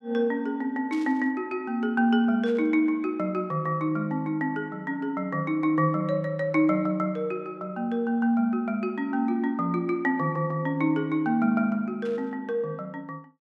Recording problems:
static burst; at 1 s, at 2.5 s and at 12 s; peak -14 dB vs average level

